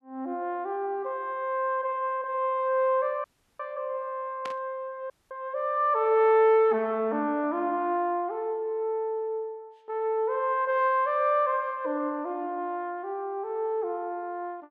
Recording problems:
dropout; at 3 s and at 5 s
burst of static; at 4.5 s; peak -7 dB vs average level

